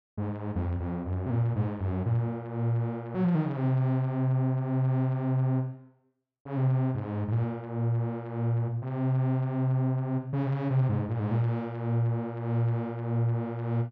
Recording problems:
none

